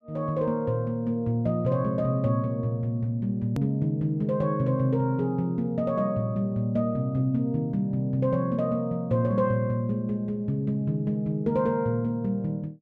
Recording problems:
hard cut with a click; at 3.5 s

